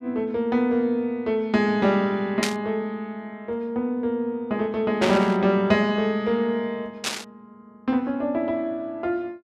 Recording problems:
burst of static; at 2.5 s, at 5 s and at 7 s; peak +4 dB vs average level

